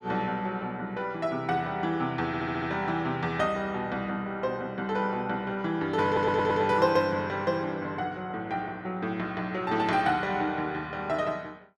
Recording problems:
stutter; at 2.5 s and at 6 s

